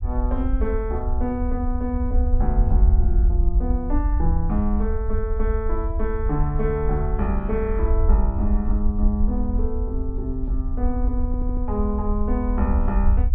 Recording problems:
rumble; below 64 Hz, SNR -3 dB
stutter; at 11 s

